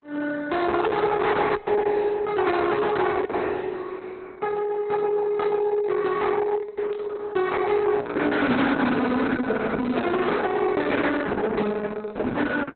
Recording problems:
lossy compression; Opus, log-spectral distance 4 dB, nothing above 4 kHz
distortion; soft clipping, signal-to-distortion ratio 11 dB
static burst; at 7 s; peak -13 dB vs average level

